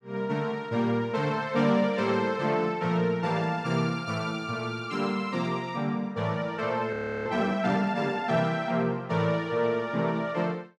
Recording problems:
frozen audio; at 7 s

